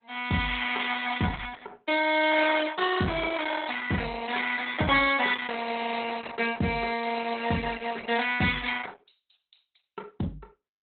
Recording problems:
codec artefacts; Opus, log-spectral distance 7 dB, nothing above 4 kHz

